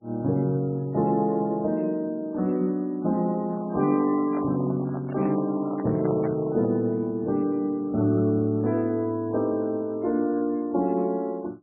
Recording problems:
lossy compression; MP3, log-spectral distance 2 dB, nothing above 2.4 kHz
handling noise; from 3.5 to 7 s; peak -6 dB vs average level

